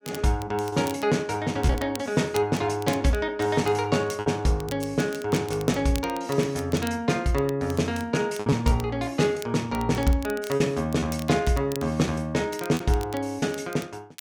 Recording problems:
crackling; vinyl, SNR 18 dB
lost packets; 3% of the sound replaced, filled with repeated pitch periods

